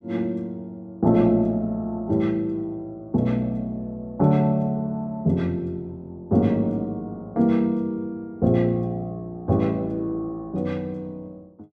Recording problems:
none

